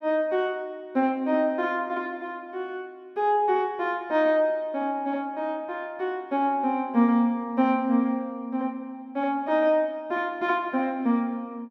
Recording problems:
none

